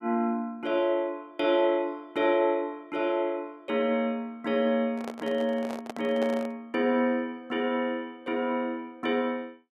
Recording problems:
microphone handling noise; from 5 to 6.5 s; peak -3 dB vs average level

